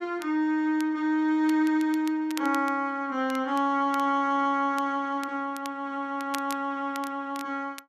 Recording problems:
crackle; vinyl, SNR 19 dB

